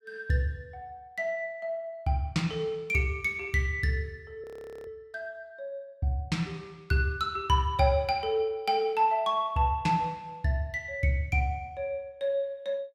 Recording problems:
frozen audio; at 4.5 s

